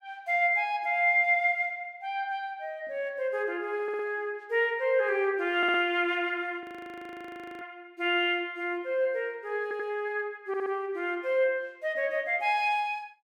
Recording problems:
stutter; 4 times, first at 4 s
audio freezing; at 6.5 s for 1 s

